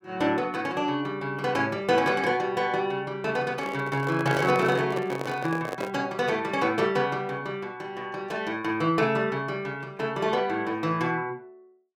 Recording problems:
microphone handling noise; from 3.5 to 6 s; peak +1 dB vs average level

